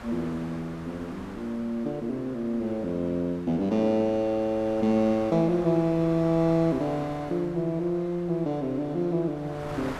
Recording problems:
wind on the microphone; below 1.5 kHz, SNR 17 dB

